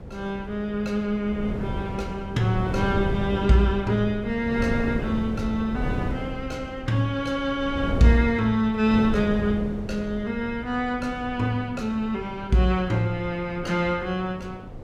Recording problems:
wind on the microphone; below 290 Hz, SNR 8 dB

